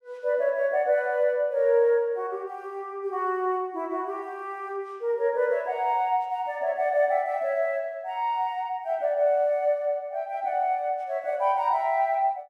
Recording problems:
none

